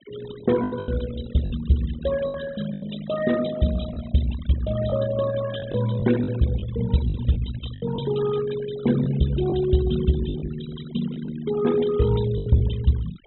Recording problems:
treble cut off; nothing above 3.9 kHz
denoising artefacts; signal-to-artefact ratio 15 dB
lost packets; 7% of the sound replaced, filled with the last packet

